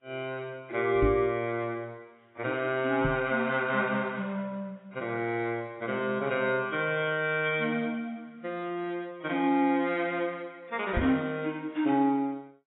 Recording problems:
codec artefacts; AAC, log-spectral distance 2 dB, nothing above 3.3 kHz
microphone bump; at 1 s, at 3 s and at 11 s; peak +4 dB vs average level

